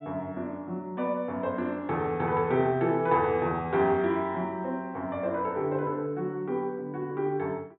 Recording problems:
treble missing; nothing above 4 kHz

